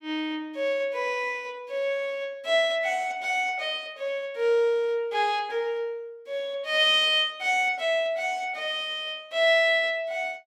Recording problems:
none

